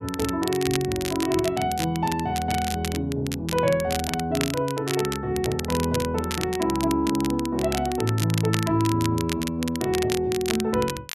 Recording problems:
crackle; vinyl, SNR 8 dB

